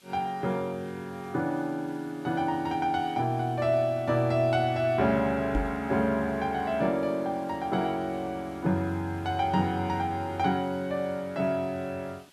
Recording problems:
background hiss; SNR 27 dB
microphone thump; at 5.5 s; peak +2 dB vs average level

